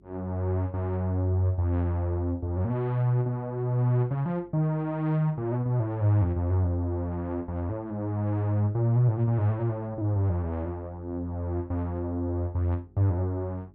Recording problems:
electrical hum; 50 Hz, harmonics up to 400 Hz, SNR 29 dB

